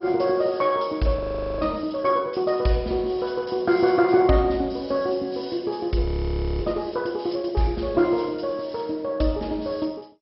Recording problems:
lossy codec; MP2, log-spectral distance 3 dB, nothing above 5.5 kHz
audio freezing; at 1 s and at 6 s for 0.5 s

